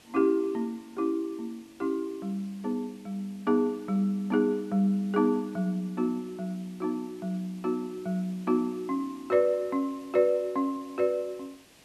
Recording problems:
background hiss; SNR 26 dB

